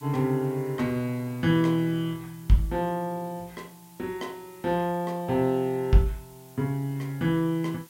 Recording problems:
background hiss; slope +2 dB per octave, SNR 25 dB

